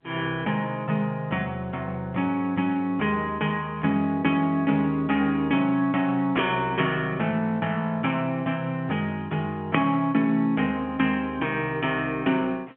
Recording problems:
telephone audio; 170 Hz to 3.6 kHz, G.711

